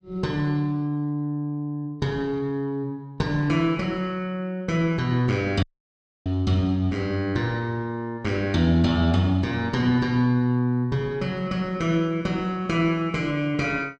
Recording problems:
dropout; at 5.5 s for 0.5 s

